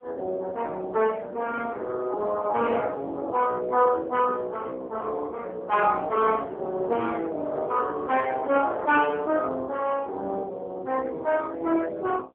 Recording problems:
phone line; 300 Hz to 3.2 kHz, AMR-NB

